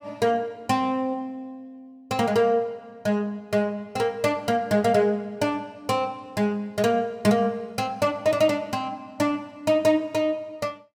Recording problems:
none

